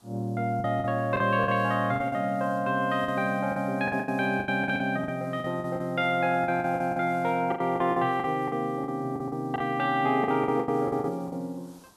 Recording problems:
background hiss; SNR 30 dB
packet loss; 14% of the sound replaced, filled with the last packet

